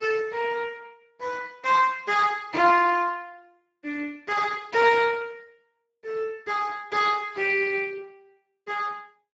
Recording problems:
lossy codec; Speex, log-spectral distance 4 dB, nothing above 7.3 kHz

